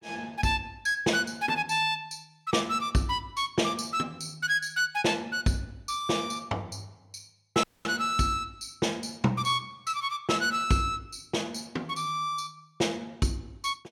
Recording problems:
audio cutting out; at 7.5 s

